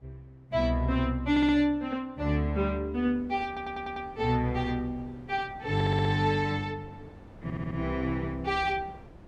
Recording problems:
wind on the microphone; below 490 Hz, SNR 21 dB
stutter; 4 times, first at 1.5 s

